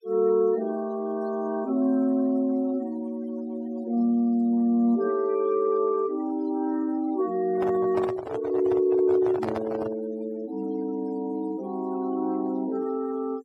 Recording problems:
noise reduction artefacts; signal-to-artefact ratio 22 dB
microphone handling noise; from 7.5 to 10 s; peak -2 dB vs average level

